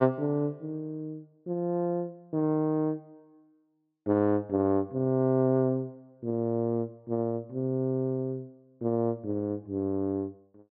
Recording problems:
treble missing; nothing above 5.5 kHz

